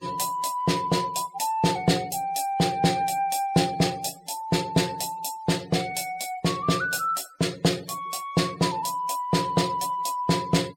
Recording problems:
noise reduction artefacts; signal-to-artefact ratio 22 dB

